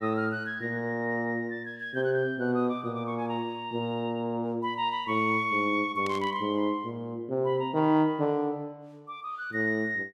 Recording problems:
burst of static; at 6 s; peak -8 dB vs average level

